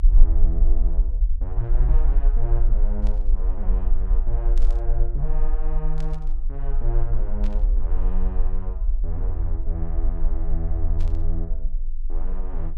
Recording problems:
low-frequency rumble; below 38 Hz, strongest tone 20 Hz, SNR -9 dB
burst of static; 5 times, first at 3 s; peak -8 dB vs average level

